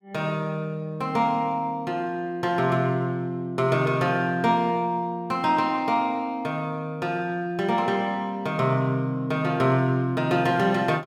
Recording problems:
none

